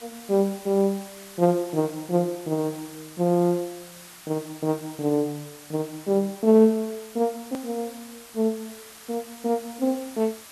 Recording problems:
hiss; SNR 18 dB
hard cut with a click; at 7.5 s

